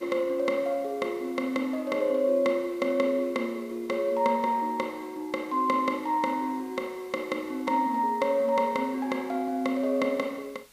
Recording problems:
hiss; slope 0 dB per octave, SNR 27 dB

